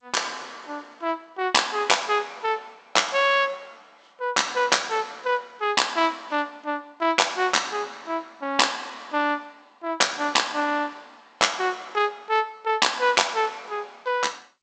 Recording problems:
lossy codec; G.722, log-spectral distance 4 dB, nothing above 7.8 kHz

